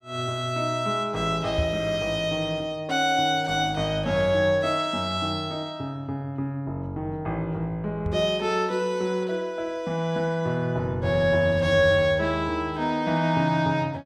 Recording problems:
knock on the microphone; at 1.5 s and at 8 s; peak +1 dB vs average level

